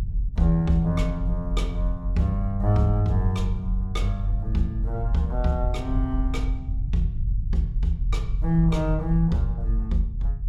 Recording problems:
rumble; below 50 Hz, strongest tone 42 Hz, SNR 2 dB

